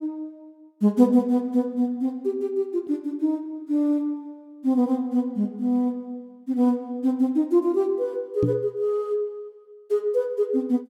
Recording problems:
knock on the microphone; at 8.5 s; peak +4 dB vs average level

